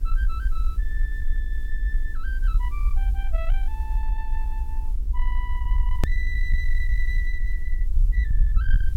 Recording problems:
distortion; soft clipping, signal-to-distortion ratio 11 dB
hum; 60 Hz, harmonics up to 960 Hz, SNR 14 dB
background hiss; SNR 20 dB
rumble; below 46 Hz, SNR -11 dB
hard cut with a click; at 6 s

